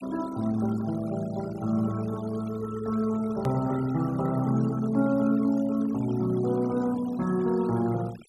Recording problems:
denoising artefacts; signal-to-artefact ratio 19 dB
click at an edit; at 3.5 s

